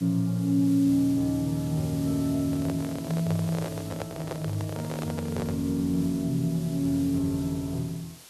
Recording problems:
hiss; slope 0 dB per octave, SNR 18 dB
microphone handling noise; from 2.5 to 5.5 s; peak -3 dB vs average level

